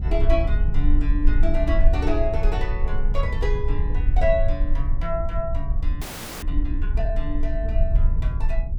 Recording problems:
rumble; below 52 Hz, strongest tone 20 Hz, SNR -4 dB
audio freezing; at 6 s

